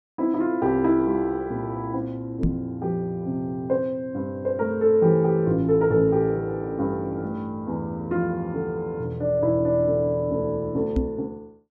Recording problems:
microphone thump; at 2.5 s and at 11 s; peak +4 dB vs average level

